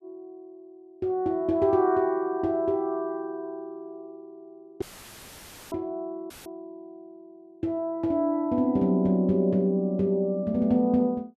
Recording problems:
dropout; at 5 s for 1 s and at 6.5 s; filled with static

